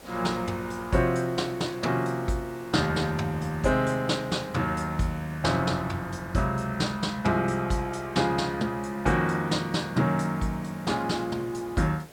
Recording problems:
background hiss; slope -5 dB per octave, SNR 22 dB

